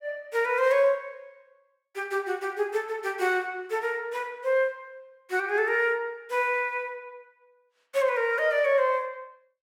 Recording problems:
none

